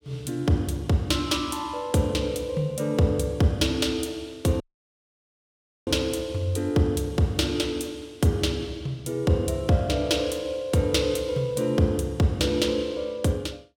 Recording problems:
audio cutting out; at 4.5 s for 1.5 s

